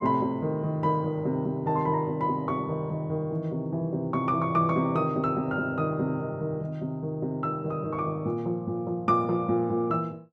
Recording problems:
none

